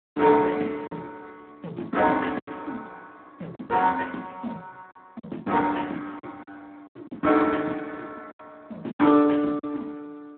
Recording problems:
phone line; 190 Hz to 2.8 kHz, Speex
lost packets; 6% of the sound replaced, filled with silence

